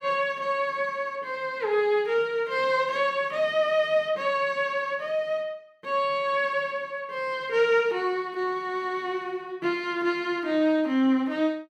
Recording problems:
none

